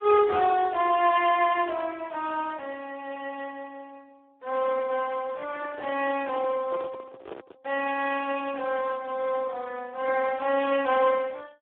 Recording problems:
phone line; 320 Hz to 2.9 kHz, Speex
microphone handling noise; from 5.5 to 7.5 s; peak -7 dB vs average level

